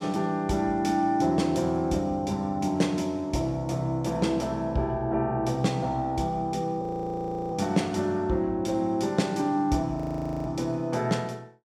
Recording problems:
audio freezing; at 7 s for 0.5 s and at 10 s for 0.5 s

